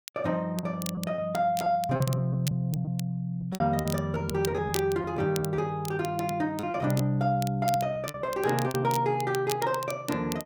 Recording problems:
crackle; vinyl, SNR 13 dB
lost packets; 9% of the sound replaced, filled with repeated pitch periods

